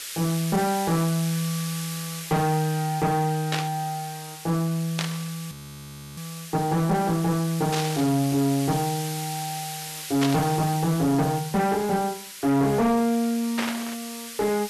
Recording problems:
distorted audio; hard clipping, uneven, signal-to-distortion ratio 9 dB
hiss; SNR 11 dB
burst of static; 5 times, first at 3.5 s; peak +1 dB vs average level
audio freezing; at 5.5 s for 0.5 s

